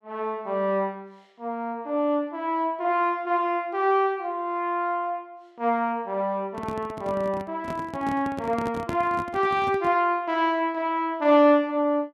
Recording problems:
microphone handling noise; from 6.5 to 10 s; peak -2 dB vs average level

